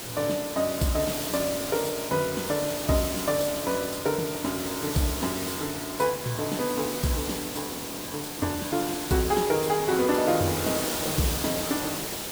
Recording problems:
hiss; slope -3 dB per octave, SNR 4 dB
frozen audio; at 7.5 s

